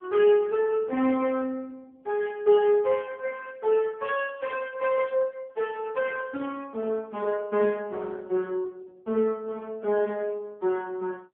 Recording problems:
phone line; 220 Hz to 3.3 kHz, AMR-NB

